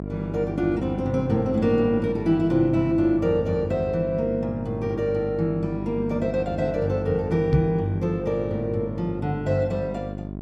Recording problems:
hum; 50 Hz, harmonics up to 1 kHz, SNR 8 dB
microphone bump; at 7.5 s; peak +7 dB vs average level

